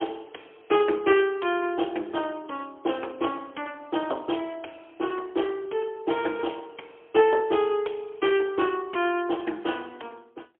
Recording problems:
phone line; 280 Hz to 3.3 kHz, AMR-NB, then MP3

